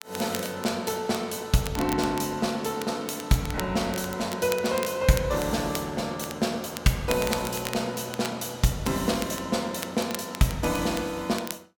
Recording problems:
crackle; vinyl, SNR 12 dB

